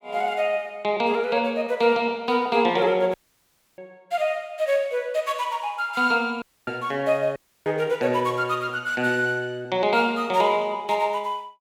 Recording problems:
audio cutting out; at 3 s for 0.5 s, at 6.5 s and at 7.5 s

